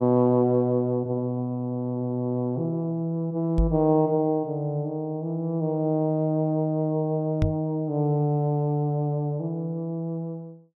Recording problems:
microphone bump; at 3.5 s and at 7.5 s; peak +4 dB vs average level

